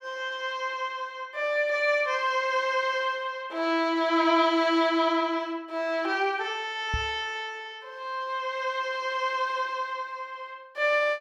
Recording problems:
knock on the microphone; at 7 s; peak -1 dB vs average level

